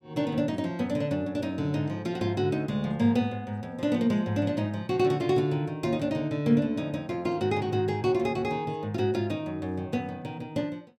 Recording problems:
none

